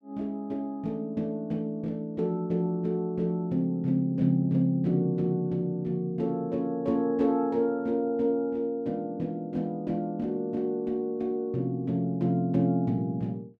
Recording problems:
none

